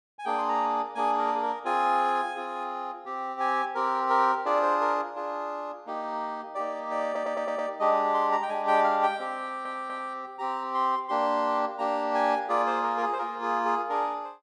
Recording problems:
stutter; at 7 s and at 9.5 s

